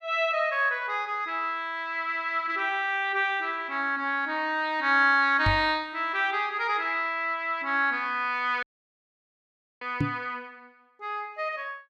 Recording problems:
knock on the microphone; at 5.5 s and at 10 s; peak +3 dB vs average level
dropout; at 8.5 s for 1 s

